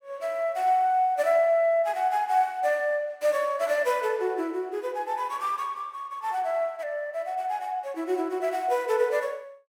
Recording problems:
none

